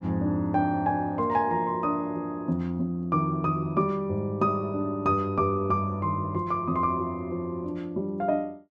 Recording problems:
none

